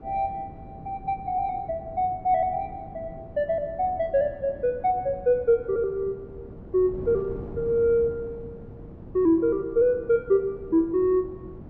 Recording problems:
wind noise; below 320 Hz, SNR 17 dB

